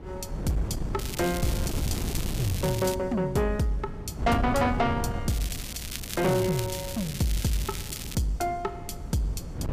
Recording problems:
distortion; soft clipping, signal-to-distortion ratio 12 dB
wind noise; below 210 Hz, SNR 6 dB
crackle; from 1 to 3 s and from 5.5 to 8 s; loose cable, SNR 8 dB

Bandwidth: 15 kHz